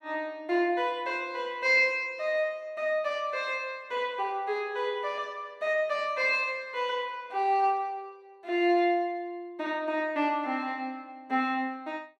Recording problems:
none

